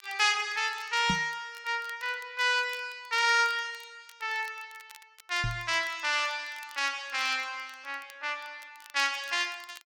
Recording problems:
crackling; vinyl, SNR 25 dB
microphone bump; at 1 s and at 5.5 s; peak +1 dB vs average level

